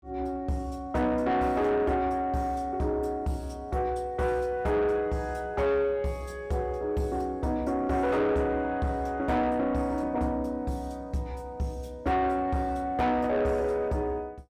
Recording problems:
distorted audio; soft clipping, signal-to-distortion ratio 11 dB

